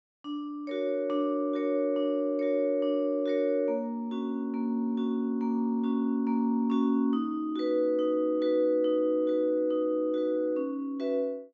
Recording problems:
low-pass filter; nothing above 8 kHz

